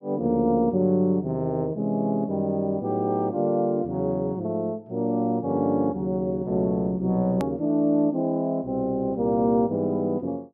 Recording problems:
click at an edit; at 7.5 s

